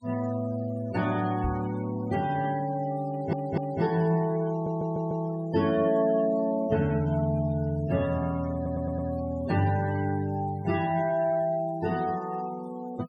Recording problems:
noise reduction artefacts; signal-to-artefact ratio 19 dB
knock on the microphone; at 1.5 s; peak 0 dB vs average level
stutter; at 3 s, at 4.5 s and at 8.5 s

